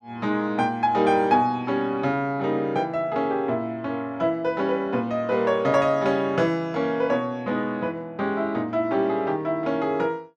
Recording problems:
none

